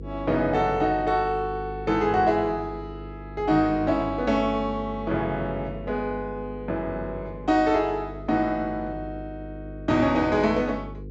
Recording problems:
treble cut off; nothing above 8 kHz
hum; 50 Hz, harmonics up to 500 Hz, SNR 14 dB

